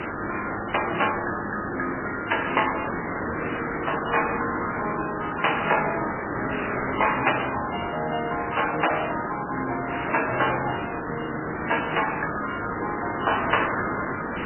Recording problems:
lossy compression; MP3, log-spectral distance 22 dB, nothing above 3 kHz
hiss; SNR 3 dB

